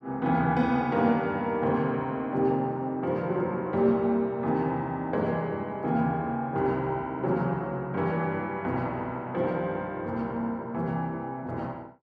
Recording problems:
none

